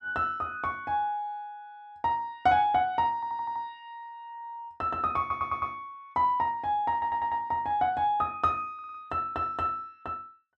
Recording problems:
audio stuttering; 4 times, first at 3 s

